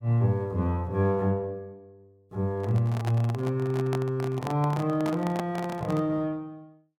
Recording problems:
microphone handling noise; from 2.5 to 6 s; peak -2 dB vs average level

